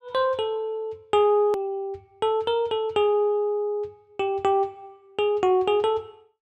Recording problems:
click at an edit; at 1.5 s

